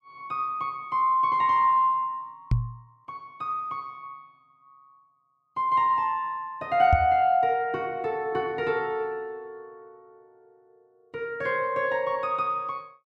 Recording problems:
knock on the microphone; at 2.5 s and at 7 s; peak +5 dB vs average level

